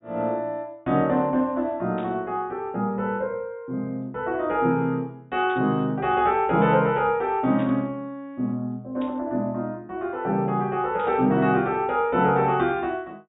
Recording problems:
treble cut off; nothing above 4 kHz
burst of static; 5 times, first at 2 s; peak -15 dB vs average level

